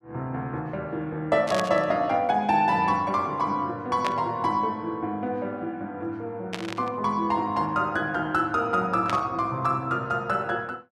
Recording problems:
burst of static; 4 times, first at 1.5 s; peak -1 dB vs average level

